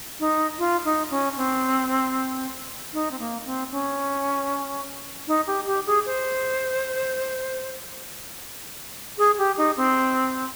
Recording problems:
background hiss; slope -1 dB per octave, SNR 10 dB

